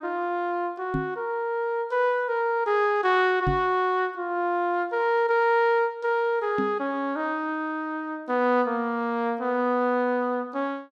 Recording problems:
knock on the microphone; at 1 s, at 3.5 s and at 6.5 s; peak +1 dB vs average level

